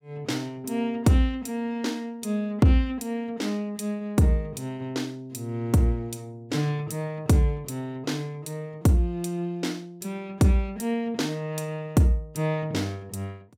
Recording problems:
none

